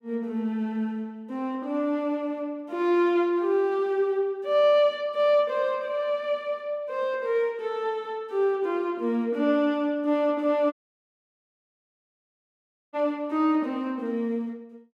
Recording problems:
audio cutting out; at 11 s for 2 s

